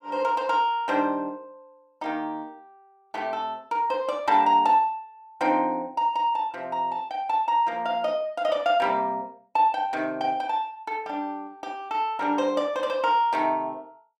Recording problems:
none

